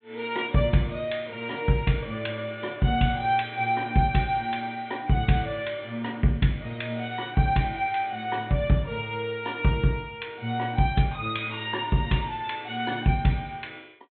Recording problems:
treble missing; nothing above 3.9 kHz

